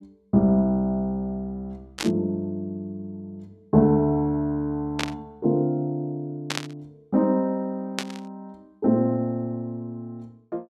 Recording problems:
burst of static; 4 times, first at 2 s; peak +2 dB vs average level

